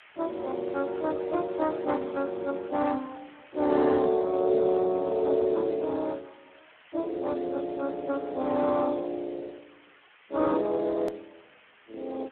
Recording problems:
phone line; 260 Hz to 2.1 kHz, Speex
hiss; SNR 25 dB
click at an edit; at 11 s

